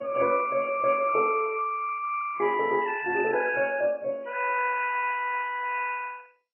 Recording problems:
lossy codec; MP3, then MP2, log-spectral distance 4 dB, nothing above 2.4 kHz

